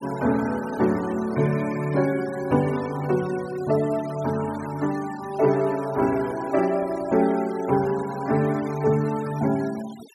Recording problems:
denoising artefacts; signal-to-artefact ratio 19 dB

